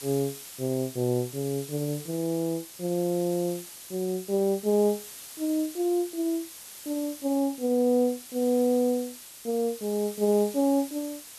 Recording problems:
background hiss; slope +1 dB per octave, SNR 14 dB

